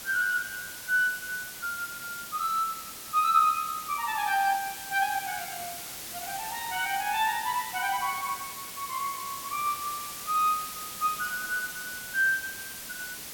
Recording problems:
hiss; slope 0 dB per octave, SNR 8 dB

